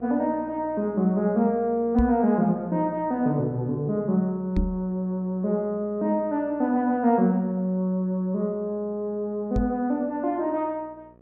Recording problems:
electrical hum; 60 Hz, harmonics up to 1.3 kHz, SNR 26 dB
microphone thump; at 2 s, at 4.5 s and at 9.5 s; peak +2 dB vs average level

